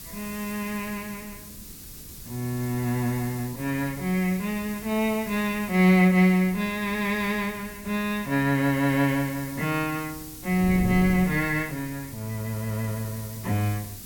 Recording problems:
hiss; slope +3 dB per octave, SNR 16 dB
wind noise; below 220 Hz, SNR 17 dB

